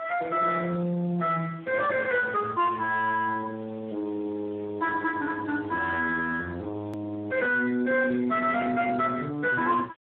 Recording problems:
telephone audio; 150 Hz to 2.6 kHz, Speex
distortion; soft clipping, signal-to-distortion ratio 10 dB
hiss; SNR 22 dB
click at an edit; at 7 s

